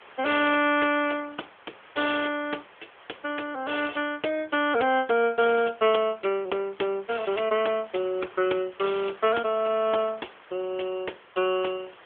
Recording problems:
phone line; 320 Hz to 3.4 kHz, AMR-NB
hiss; SNR 24 dB

